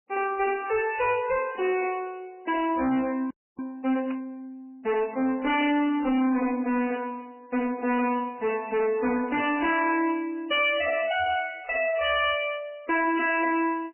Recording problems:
lossy compression; MP3, log-spectral distance 4 dB, nothing above 2.4 kHz
distortion; hard clipping, signal-to-distortion ratio 9 dB
audio freezing; at 3.5 s
burst of static; at 4 s and at 6 s; peak -13 dB vs average level

